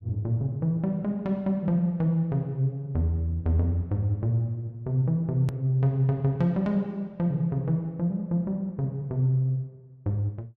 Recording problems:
hard cut with a click; at 5.5 s

